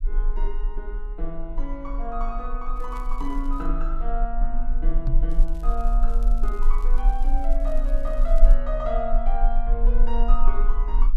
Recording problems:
rumble; below 34 Hz, strongest tone 20 Hz, SNR -6 dB
crackling; at 3 s and from 5.5 to 8.5 s; loose cable, SNR 24 dB
knock on the microphone; at 5 s; peak +6 dB vs average level

